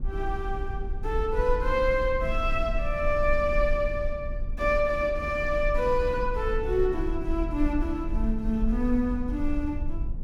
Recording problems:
rumble; below 50 Hz, strongest tone 20 Hz, SNR 6 dB

